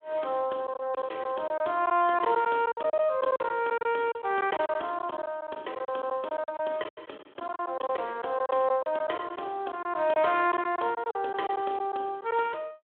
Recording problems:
telephone audio; 320 Hz to 3.5 kHz, Speex
lost packets; 12% of the sound replaced, filled with silence

